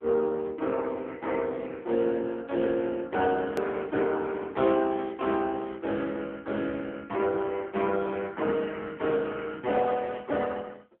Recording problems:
phone line; 240 Hz to 3.4 kHz, AMR-NB
hard cut with a click; at 3.5 s

